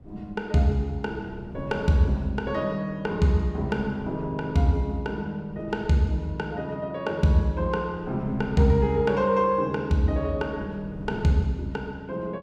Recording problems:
wind on the microphone; below 220 Hz, SNR 18 dB

